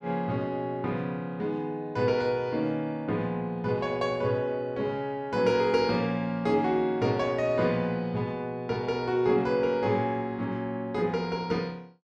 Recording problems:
none

